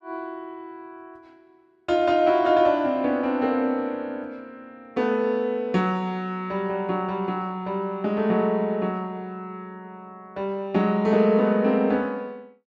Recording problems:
none

